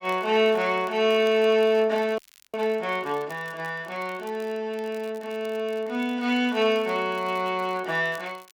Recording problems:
crackle; vinyl, SNR 28 dB
frozen audio; at 2 s

